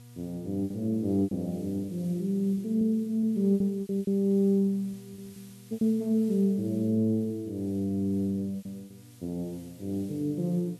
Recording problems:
hum; 60 Hz, harmonics up to 960 Hz, SNR 25 dB
hiss; slope +2 dB per octave, SNR 27 dB
packet loss; 8% of the sound replaced, filled with repeated pitch periods

